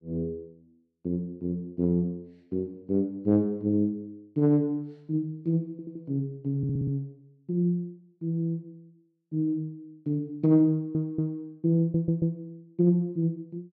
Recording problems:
audio stuttering; 4 times, first at 5.5 s

